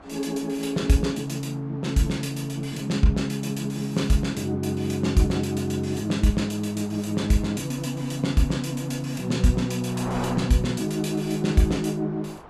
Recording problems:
wind noise; below 1.2 kHz, SNR 18 dB

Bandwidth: 14.5 kHz